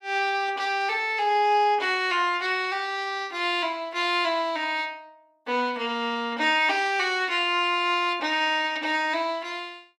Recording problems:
none

